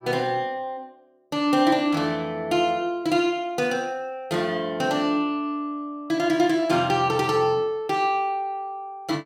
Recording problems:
none

